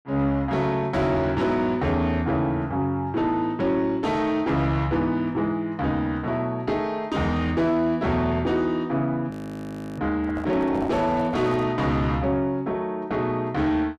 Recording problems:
distortion; soft clipping, signal-to-distortion ratio 10 dB
audio freezing; at 9.5 s for 0.5 s
microphone handling noise; from 10 to 12 s; peak -2 dB vs average level

